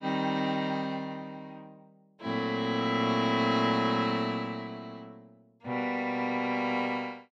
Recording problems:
none

